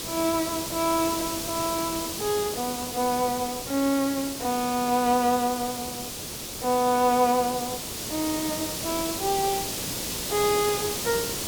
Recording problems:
hiss; SNR 4 dB

